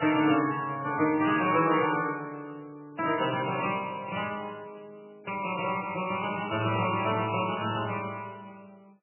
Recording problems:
lossy codec; MP3, then MP3, log-spectral distance 5 dB, nothing above 2.9 kHz

